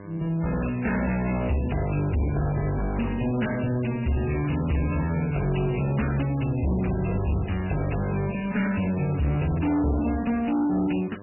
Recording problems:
lossy compression; MP3, log-spectral distance 7 dB, nothing above 2.9 kHz
distorted audio; soft clipping, signal-to-distortion ratio 7 dB
hum; 50 Hz, harmonics up to 1.7 kHz, SNR 21 dB

